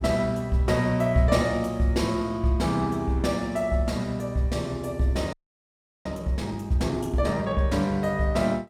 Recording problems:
audio freezing; at 5.5 s for 0.5 s

